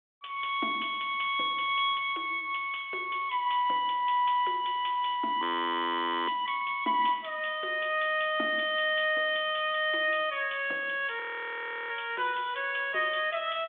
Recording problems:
telephone audio; 280 Hz to 3.5 kHz, G.726
audio freezing; at 5.5 s for 1 s and at 11 s for 0.5 s

